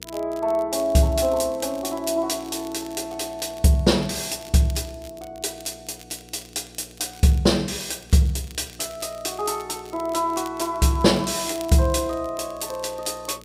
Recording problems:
electrical hum; 60 Hz, harmonics up to 480 Hz, SNR 25 dB
crackle; vinyl, SNR 23 dB

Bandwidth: 15.5 kHz